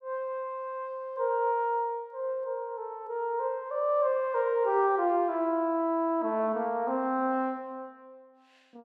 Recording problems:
none

